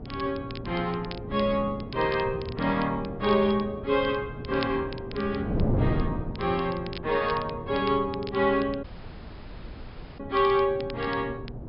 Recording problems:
low-pass filter; nothing above 5.5 kHz
mains hum; 60 Hz, harmonics up to 720 Hz, SNR 18 dB
wind noise; below 310 Hz, SNR 8 dB
crackling; vinyl, SNR 19 dB
audio cutting out; at 9 s for 1.5 s

